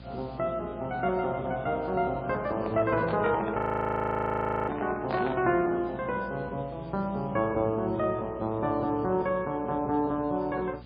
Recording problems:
codec artefacts; MP3, log-spectral distance 4 dB
hum; 60 Hz, harmonics up to 660 Hz, SNR 18 dB
hiss; SNR 27 dB
handling noise; from 2.5 to 5.5 s; peak -3 dB vs average level
audio freezing; at 3.5 s for 1 s

